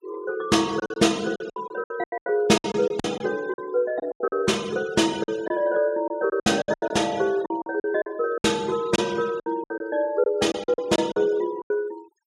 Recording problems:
noise reduction artefacts; signal-to-artefact ratio 21 dB
packet loss; 14% of the sound replaced, filled with silence

